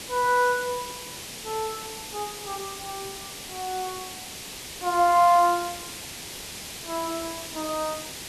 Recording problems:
background hiss; SNR 10 dB

